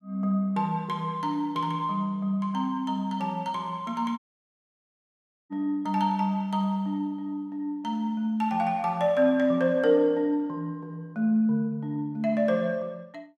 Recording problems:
dropout; at 4 s for 1.5 s

